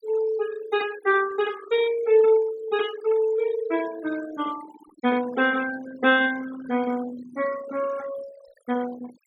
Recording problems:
denoising artefacts; signal-to-artefact ratio 16 dB

